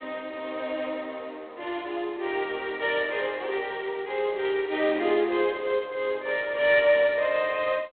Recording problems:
phone line; 300 Hz to 3.7 kHz, G.726

